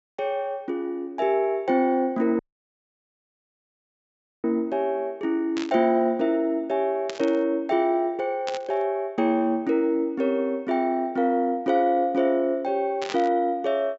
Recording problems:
low-pass filter; nothing above 7.6 kHz
dropout; at 2.5 s for 2 s
burst of static; 4 times, first at 5.5 s; peak -5 dB vs average level

